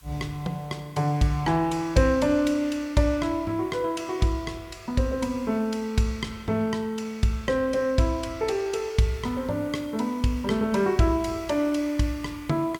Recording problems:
background hiss; SNR 29 dB

